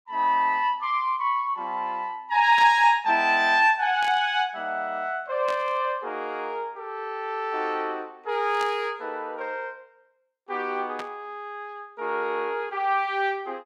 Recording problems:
burst of static; 5 times, first at 2.5 s; peak -8 dB vs average level

